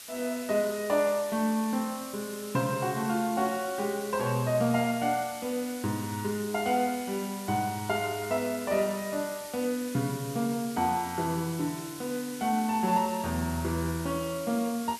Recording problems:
hiss; slope +2 dB per octave, SNR 12 dB

